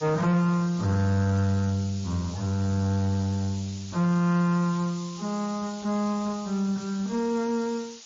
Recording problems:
codec artefacts; MP3, then MP3, log-spectral distance 9 dB, nothing above 16 kHz
distorted audio; soft clipping, signal-to-distortion ratio 11 dB
background hiss; SNR 18 dB

